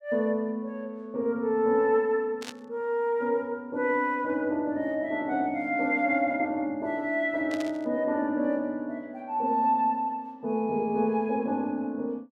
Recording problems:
burst of static; at 2.5 s and at 7.5 s; peak -6 dB vs average level

